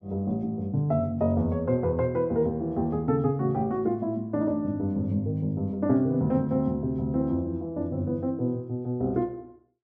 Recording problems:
none

